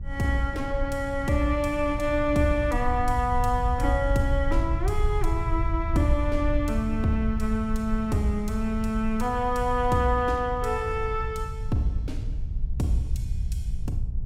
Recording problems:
electrical hum; 60 Hz, harmonics up to 420 Hz, SNR 16 dB
rumble; below 74 Hz, SNR 5 dB

